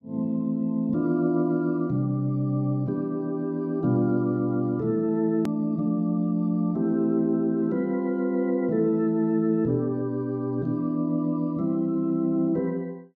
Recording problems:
click at an edit; at 5.5 s

